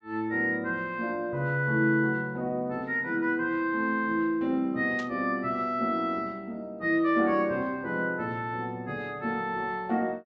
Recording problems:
low-pass filter; nothing above 8 kHz
burst of static; at 5 s; peak -12 dB vs average level

